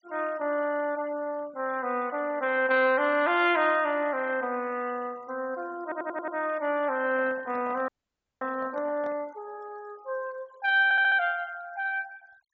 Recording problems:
treble cut off; nothing above 8 kHz
denoising artefacts; signal-to-artefact ratio 26 dB
audio stuttering; at 6 s and at 11 s
microphone handling noise; from 7 to 9 s; peak -13 dB vs average level
audio freezing; at 8 s for 0.5 s

